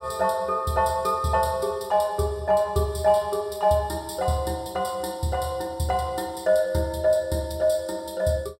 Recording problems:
none

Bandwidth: 17 kHz